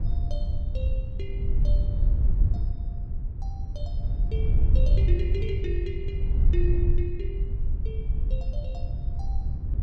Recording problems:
wind on the microphone; below 70 Hz, SNR -11 dB

